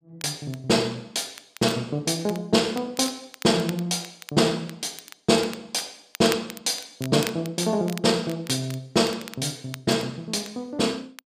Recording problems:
crackling; vinyl, SNR 16 dB

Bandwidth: 15 kHz